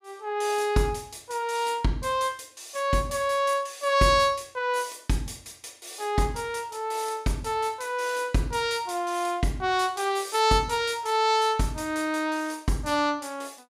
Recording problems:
none

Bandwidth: 15.5 kHz